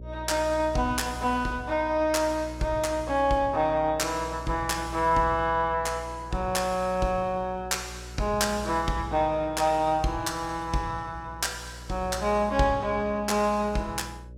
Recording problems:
electrical hum; 60 Hz, harmonics up to 600 Hz, SNR 15 dB

